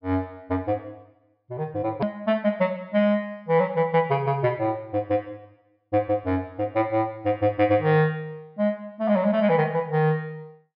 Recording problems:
treble missing; nothing above 5.5 kHz
click at an edit; at 2 s

